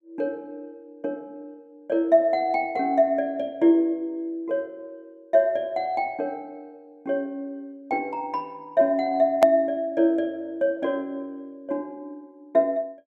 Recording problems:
hard cut with a click; at 9.5 s

